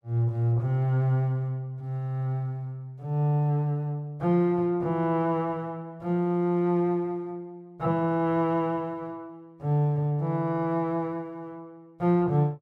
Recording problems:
none

